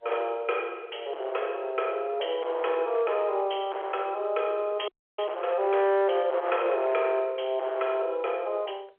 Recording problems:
phone line; 340 Hz to 3.4 kHz, G.711
distorted audio; hard clipping, signal-to-distortion ratio 10 dB
frozen audio; at 5 s

